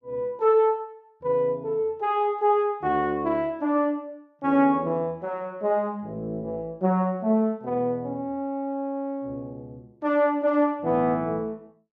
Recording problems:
none

